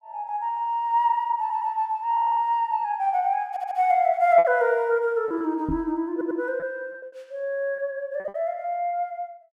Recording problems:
packet loss; 5% of the sound replaced, filled with repeated pitch periods
stutter; 4 times, first at 1.5 s
microphone bump; at 5.5 s; peak -1 dB vs average level

